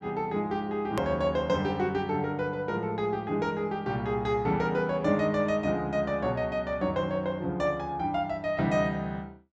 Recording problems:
hard cut with a click; at 1 s

